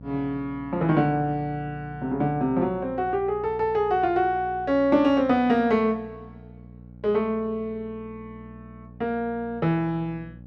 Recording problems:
hum; 60 Hz, harmonics up to 600 Hz, SNR 20 dB

